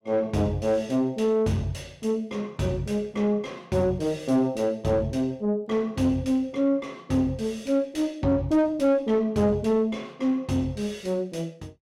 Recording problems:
distorted audio; soft clipping, signal-to-distortion ratio 7 dB

